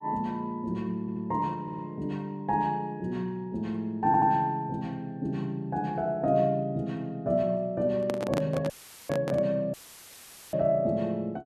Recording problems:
stutter; at 1 s, at 1.5 s and at 4 s
microphone handling noise; from 8 to 9.5 s; peak +2 dB vs average level
dropout; at 8.5 s and at 9.5 s for 1 s; filled with static

